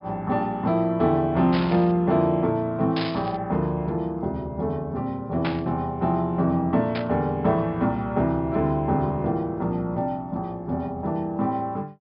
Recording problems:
treble missing; nothing above 5.5 kHz
static burst; 4 times, first at 1.5 s; peak -2 dB vs average level

